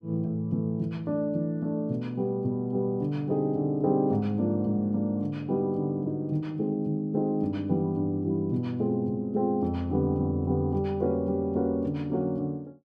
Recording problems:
none

